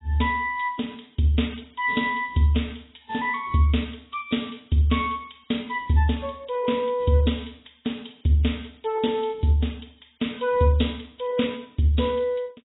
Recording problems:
codec artefacts; AAC, log-spectral distance 6 dB, nothing above 3.8 kHz

